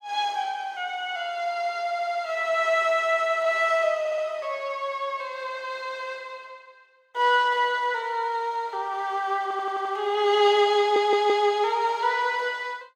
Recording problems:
audio stuttering; 4 times, first at 2 s

